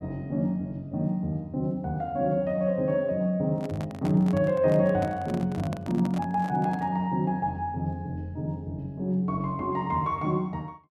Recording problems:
handling noise; from 3.5 to 7 s; peak -5 dB vs average level

